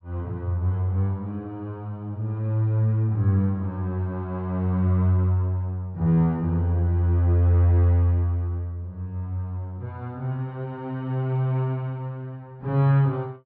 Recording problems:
low-pass filter; nothing above 5.5 kHz

